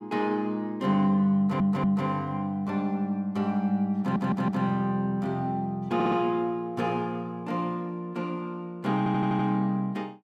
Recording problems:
audio stuttering; 4 times, first at 1.5 s

